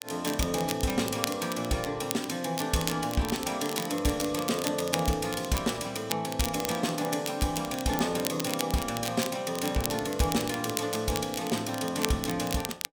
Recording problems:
crackling; vinyl, SNR 8 dB

